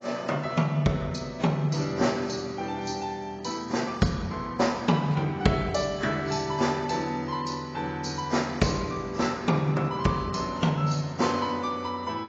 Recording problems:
codec artefacts; AAC, log-spectral distance 4 dB, nothing above 6.7 kHz

